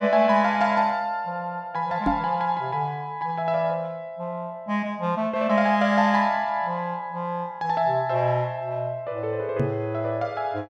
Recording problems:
microphone thump; at 2 s and at 9.5 s; peak +3 dB vs average level

